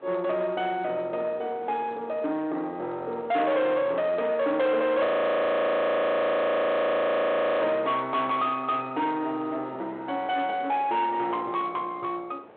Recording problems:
telephone audio; 240 Hz to 3.7 kHz, G.726
distortion; soft clipping, signal-to-distortion ratio 10 dB
wind noise; below 960 Hz, SNR 21 dB
frozen audio; at 5 s for 2.5 s

